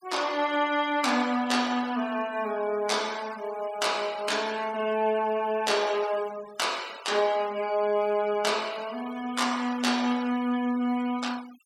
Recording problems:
denoising artefacts; signal-to-artefact ratio 19 dB

